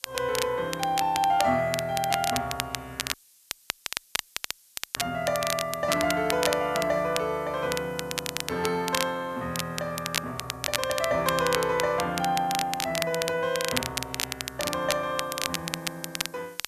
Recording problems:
background hiss; SNR 27 dB
crackle; vinyl, SNR 4 dB
audio cutting out; at 3 s for 2 s

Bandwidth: 14 kHz